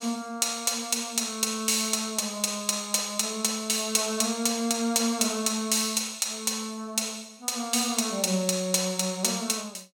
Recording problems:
none

